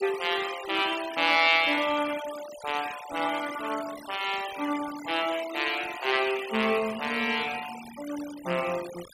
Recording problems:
denoising artefacts; signal-to-artefact ratio 13 dB

